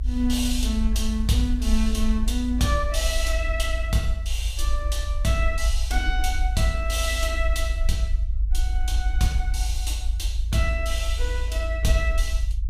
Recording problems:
low-frequency rumble; below 54 Hz, SNR 0 dB

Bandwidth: 15 kHz